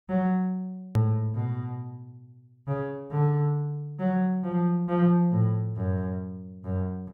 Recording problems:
edit click; at 1 s

